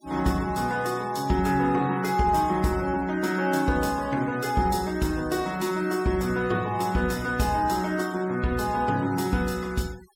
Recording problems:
denoising artefacts; signal-to-artefact ratio 21 dB

